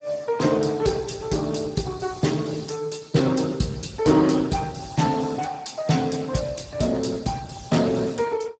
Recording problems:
lossy codec; Speex, log-spectral distance 6 dB, nothing above 7.8 kHz

